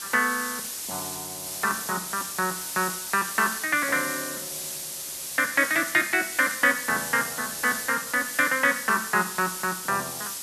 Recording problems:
hiss; SNR 6 dB

